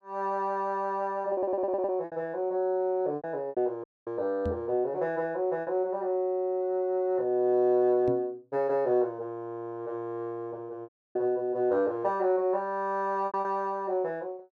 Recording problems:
packet loss; 5% of the sound replaced, filled with repeated pitch periods
audio stuttering; at 1.5 s
audio cutting out; at 4 s and at 11 s
microphone thump; at 4.5 s and at 8 s; peak -1 dB vs average level

